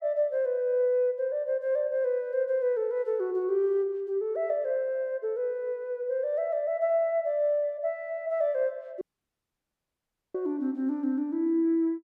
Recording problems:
audio cutting out; at 9 s for 1.5 s

